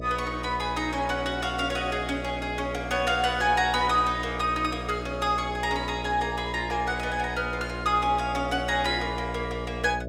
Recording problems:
electrical hum; 60 Hz, harmonics up to 660 Hz, SNR 9 dB

